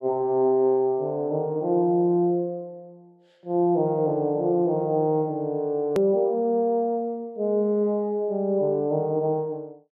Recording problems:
click at an edit; at 6 s

